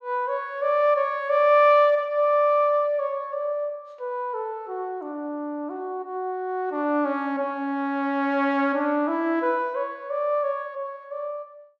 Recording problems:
none

